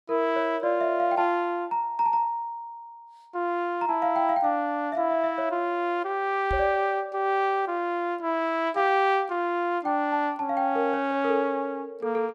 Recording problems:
knock on the microphone; at 6.5 s; peak -4 dB vs average level

